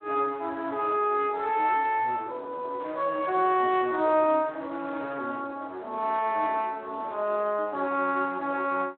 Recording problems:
telephone audio; 280 Hz to 4 kHz, Speex

